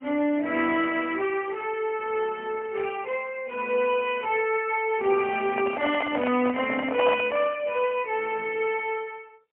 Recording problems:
phone line; 240 Hz to 3.1 kHz, AMR-NB, then MP3
microphone handling noise; from 5.5 to 7.5 s; peak +2 dB vs average level

